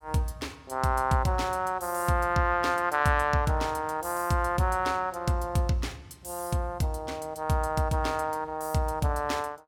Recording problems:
none

